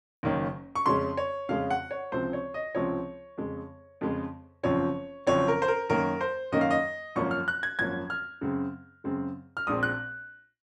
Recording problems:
none

